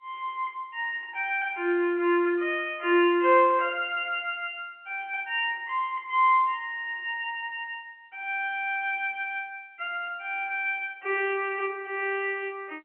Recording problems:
phone line; 260 Hz to 3.1 kHz, G.711

